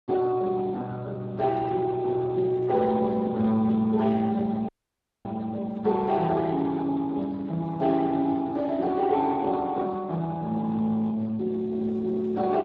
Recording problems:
lossy codec; Speex, log-spectral distance 3 dB
audio cutting out; at 4.5 s for 0.5 s

